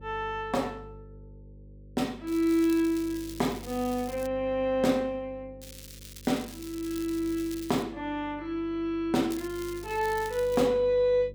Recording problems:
hum; 50 Hz, harmonics up to 550 Hz, SNR 19 dB
crackling; from 2.5 to 4.5 s, from 5.5 to 8 s and from 9.5 to 11 s; loose cable, SNR 16 dB

